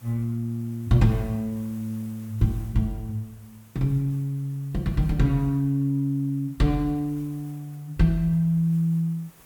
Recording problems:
hiss; slope -4 dB per octave, SNR 27 dB

